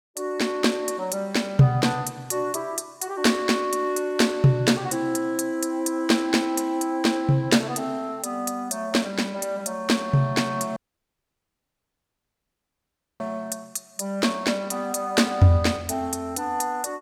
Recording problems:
dropout; at 11 s for 2.5 s

